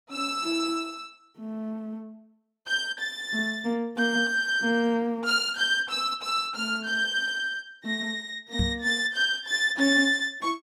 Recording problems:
microphone bump; at 8.5 s; peak +2 dB vs average level

